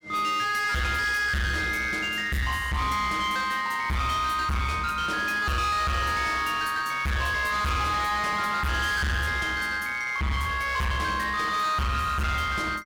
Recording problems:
distorted audio; hard clipping, uneven, signal-to-distortion ratio 6 dB

